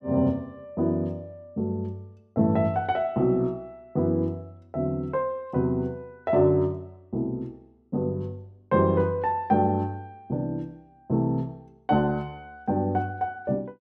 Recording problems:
none

